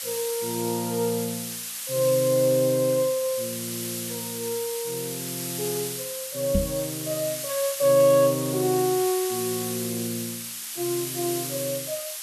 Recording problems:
hiss; slope +4 dB per octave, SNR 5 dB
microphone bump; at 6.5 s; peak +4 dB vs average level

